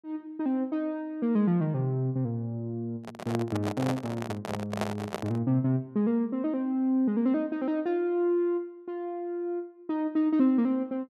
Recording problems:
handling noise; from 3 to 5.5 s; peak +2 dB vs average level

